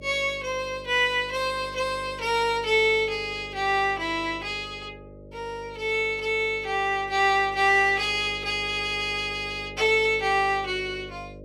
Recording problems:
hum; 50 Hz, harmonics up to 600 Hz, SNR 19 dB

